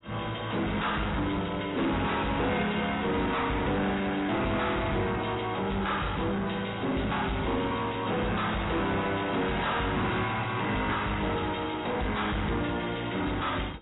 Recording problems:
lossy codec; AAC, log-spectral distance 9 dB, nothing above 3.8 kHz
distortion; soft clipping, signal-to-distortion ratio 7 dB
crackle; from 3.5 to 5.5 s and from 6.5 to 8 s; loose cable, SNR 30 dB

